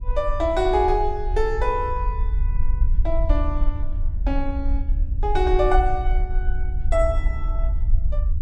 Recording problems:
rumble; below 54 Hz, SNR 1 dB

